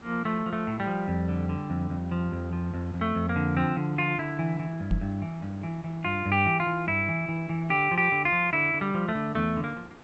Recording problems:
treble cut off; nothing above 7.9 kHz
hiss; SNR 22 dB
microphone bump; at 5 s; peak +3 dB vs average level

